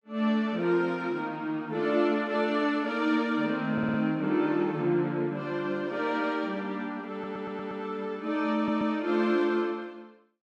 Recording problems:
audio stuttering; at 3.5 s, at 7 s and at 8.5 s

